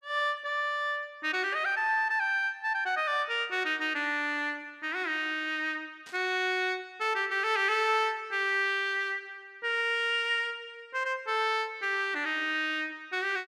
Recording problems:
burst of static; at 6 s; peak -16 dB vs average level

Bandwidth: 14.5 kHz